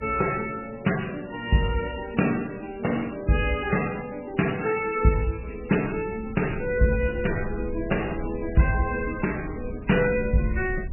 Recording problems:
codec artefacts; MP3, log-spectral distance 6 dB, nothing above 2.7 kHz
wind noise; below 94 Hz, SNR 12 dB

